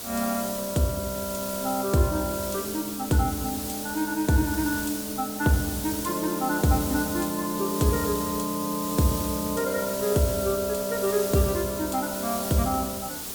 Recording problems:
hiss; SNR 6 dB

